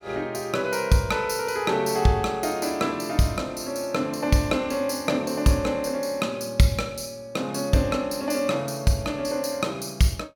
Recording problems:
none

